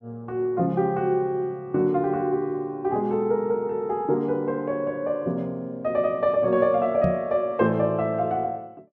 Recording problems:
knock on the microphone; at 7 s; peak +2 dB vs average level

